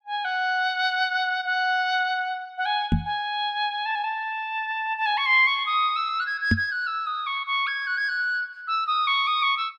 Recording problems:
knock on the microphone; at 3 s and at 6.5 s; peak +6 dB vs average level

